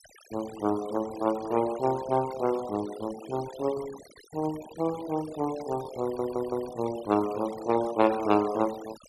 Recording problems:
denoising artefacts; signal-to-artefact ratio 16 dB
stutter; at 6 s

